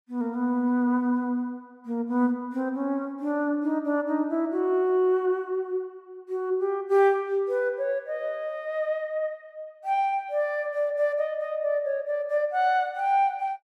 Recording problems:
none

